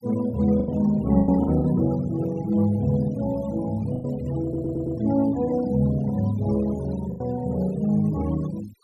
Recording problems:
noise reduction artefacts; signal-to-artefact ratio 20 dB
lost packets; 5% of the sound replaced, filled with the last packet
audio stuttering; at 4.5 s

